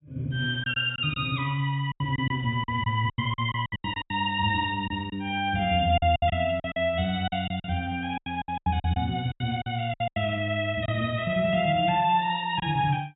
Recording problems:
treble cut off; nothing above 4 kHz
lost packets; 12% of the sound replaced, filled with silence

